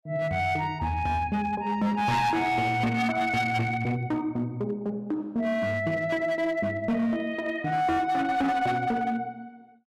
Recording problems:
distortion; hard clipping, signal-to-distortion ratio 10 dB

